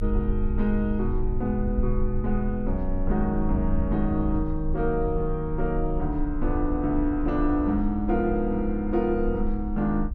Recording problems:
low-frequency rumble; below 54 Hz, strongest tone 24 Hz, SNR 6 dB

